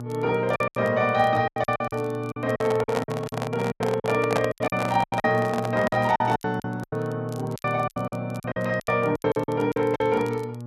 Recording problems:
hum; 60 Hz, harmonics up to 1.1 kHz, SNR 10 dB
crackling; vinyl, SNR 28 dB
packet loss; 17% of the sound replaced, filled with silence
microphone handling noise; from 2.5 to 6.5 s; peak +3 dB vs average level

